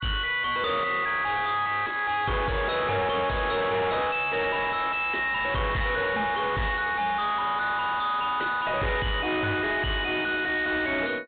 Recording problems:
low-pass filter; nothing above 4 kHz
distortion; soft clipping, signal-to-distortion ratio 5 dB

